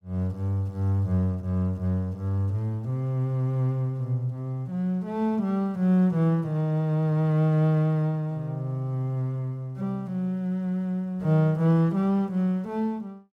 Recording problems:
none

